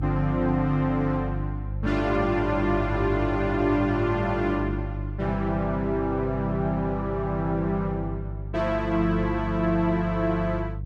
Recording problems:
hum; 50 Hz, harmonics up to 350 Hz, SNR 7 dB

